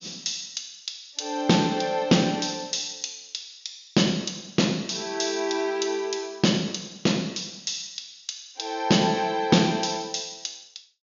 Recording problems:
treble cut off; nothing above 7.1 kHz

